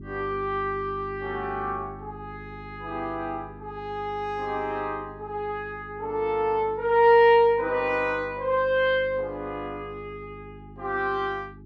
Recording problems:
electrical hum; 50 Hz, harmonics up to 400 Hz, SNR 19 dB

